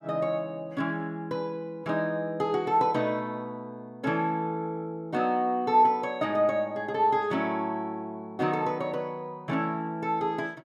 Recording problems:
none

